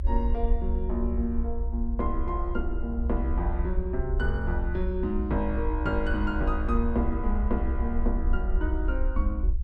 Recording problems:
low-frequency rumble; below 62 Hz, SNR -1 dB

